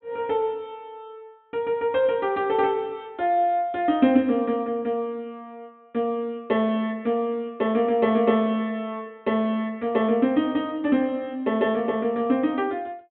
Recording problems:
low-pass filter; nothing above 3.8 kHz

